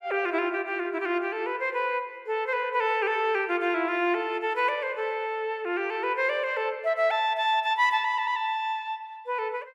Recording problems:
none

